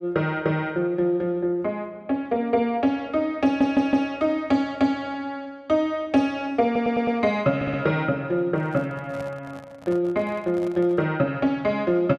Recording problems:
audio stuttering; at 3.5 s, at 6.5 s and at 7.5 s
handling noise; from 8.5 to 11 s; peak -11 dB vs average level

